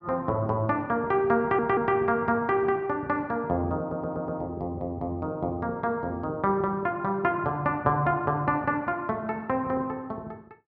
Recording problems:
stutter; at 1.5 s and at 4 s

